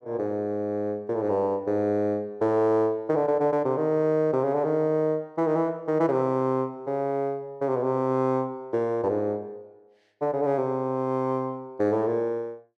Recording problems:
none

